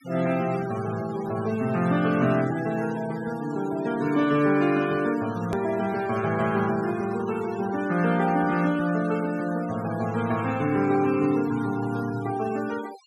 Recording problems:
noise reduction artefacts; signal-to-artefact ratio 16 dB
click at an edit; at 5.5 s

